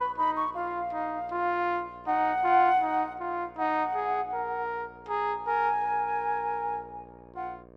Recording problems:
mains hum; 60 Hz, harmonics up to 1.7 kHz, SNR 24 dB

